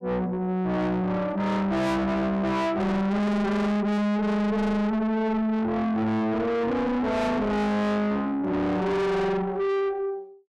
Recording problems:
distortion; soft clipping, signal-to-distortion ratio 6 dB

